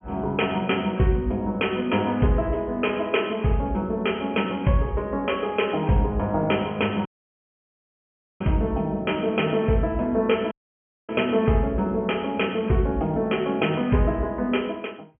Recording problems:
treble cut off; nothing above 3.2 kHz
dropout; at 7 s for 1.5 s and at 11 s for 0.5 s

